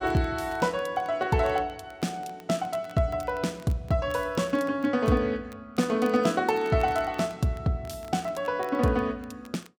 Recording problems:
crackle; vinyl, SNR 27 dB

